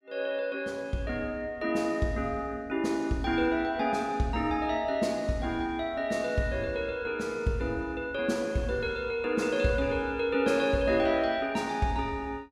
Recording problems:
none

